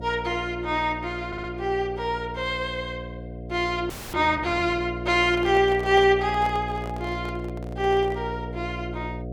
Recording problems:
electrical hum; 60 Hz, harmonics up to 720 Hz, SNR 10 dB
stutter; at 1.5 s
frozen audio; at 4 s
microphone handling noise; from 5 to 8.5 s; peak -8 dB vs average level

